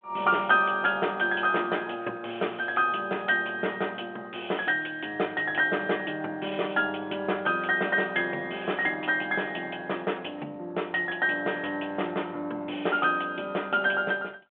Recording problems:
phone line; 220 Hz to 3.4 kHz, G.726

